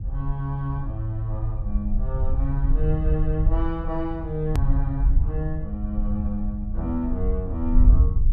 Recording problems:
low-frequency rumble; below 62 Hz, SNR -3 dB
edit click; at 4.5 s

